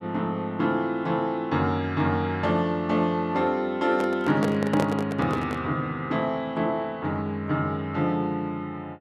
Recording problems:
microphone handling noise; from 4 to 5.5 s; peak +2 dB vs average level

